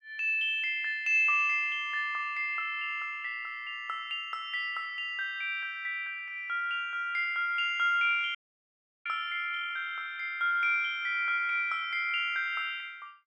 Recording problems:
dropout; at 8.5 s for 0.5 s

